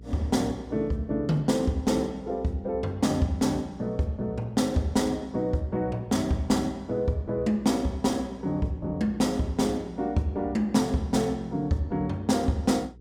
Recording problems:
electrical hum; 60 Hz, harmonics up to 480 Hz, SNR 21 dB

